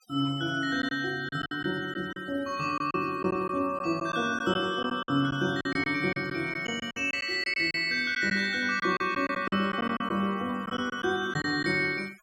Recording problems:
noise reduction artefacts; signal-to-artefact ratio 24 dB
lost packets; 8% of the sound replaced, filled with silence

